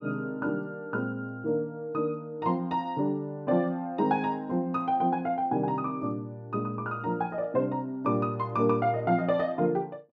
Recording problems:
none

